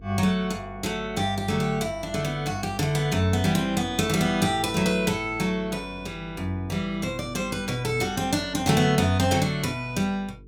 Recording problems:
electrical hum; 50 Hz, harmonics up to 450 Hz, SNR 20 dB

